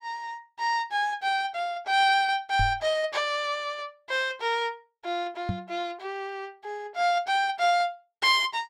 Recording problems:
microphone bump; at 2.5 s and at 5.5 s; peak 0 dB vs average level

